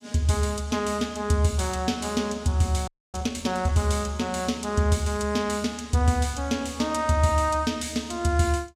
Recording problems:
frozen audio; at 3 s

